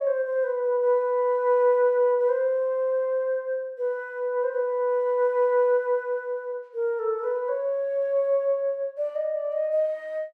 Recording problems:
none

